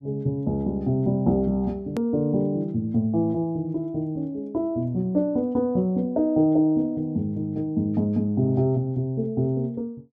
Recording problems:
click at an edit; at 2 s

